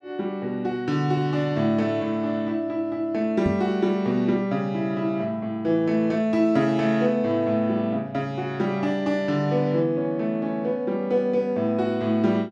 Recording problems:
microphone bump; at 3.5 s; peak 0 dB vs average level

